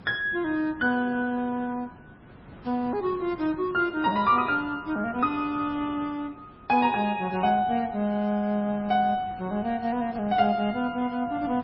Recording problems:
lossy compression; MP3, log-spectral distance 2 dB, nothing above 5.2 kHz
background hiss; SNR 21 dB

